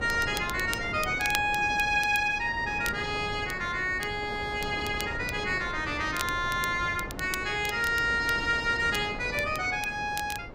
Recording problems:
wind noise; below 610 Hz, SNR 12 dB
crackling; vinyl, SNR 14 dB

